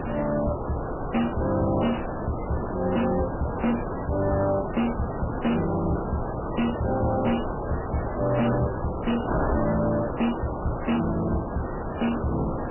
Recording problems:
codec artefacts; MP3, log-spectral distance 5 dB, nothing above 2.9 kHz
distorted audio; hard clipping, uneven, signal-to-distortion ratio 10 dB
wind on the microphone; below 860 Hz, SNR 4 dB

